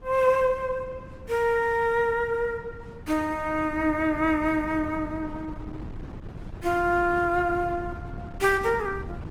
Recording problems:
lossy compression; Opus, log-spectral distance 2 dB, nothing above 20.1 kHz
wind noise; below 210 Hz, SNR 16 dB

